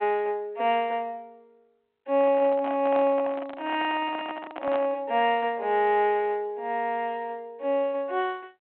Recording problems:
phone line; 300 Hz to 3.3 kHz, G.726
microphone handling noise; from 2 to 5 s; peak -5 dB vs average level

